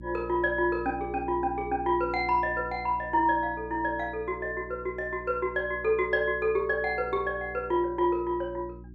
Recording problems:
hum; 60 Hz, harmonics up to 360 Hz, SNR 17 dB

